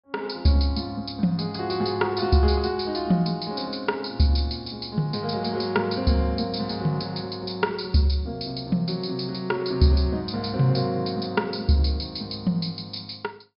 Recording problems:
low-pass filter; nothing above 5.5 kHz

